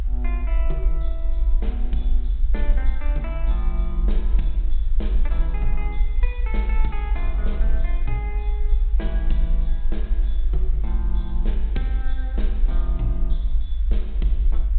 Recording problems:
low-pass filter; nothing above 4 kHz
hiss; SNR 22 dB
low-frequency rumble; below 50 Hz, SNR -11 dB

